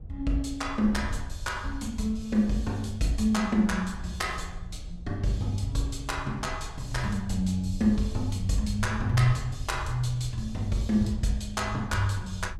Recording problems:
wind noise; below 80 Hz, SNR 12 dB

